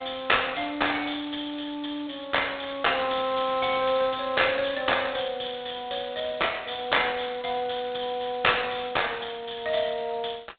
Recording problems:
phone line; 260 Hz to 3.7 kHz, G.726

